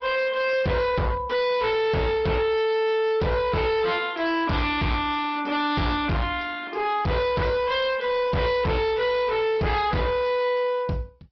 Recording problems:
treble cut off; nothing above 5.5 kHz
lossy codec; MP2, then Opus, log-spectral distance 3 dB
distortion; hard clipping, signal-to-distortion ratio 7 dB

